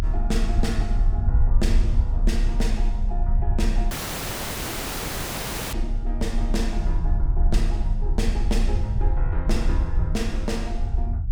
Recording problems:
low-frequency rumble; below 60 Hz, strongest tone 32 Hz, SNR -6 dB
dropout; at 4 s for 2 s

